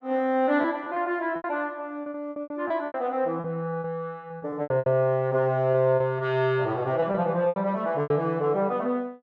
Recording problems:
packet loss; 11% of the sound replaced, filled with repeated pitch periods

